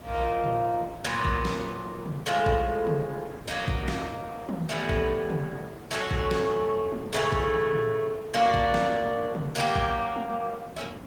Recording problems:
codec artefacts; Opus, log-spectral distance 3 dB, nothing above 19.5 kHz
hiss; slope -6 dB per octave, SNR 21 dB
wind noise; below 390 Hz, SNR 17 dB

